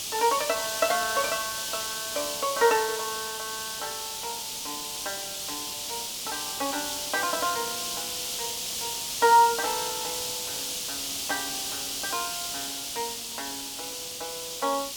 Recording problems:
background hiss; SNR 2 dB

